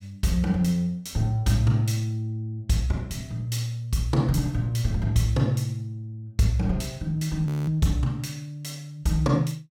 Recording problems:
audio freezing; at 7.5 s

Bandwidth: 17 kHz